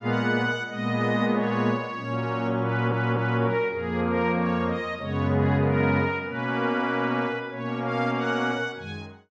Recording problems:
stutter; at 2.5 s

